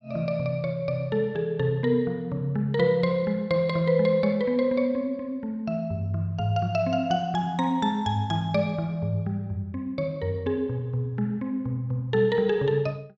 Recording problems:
none

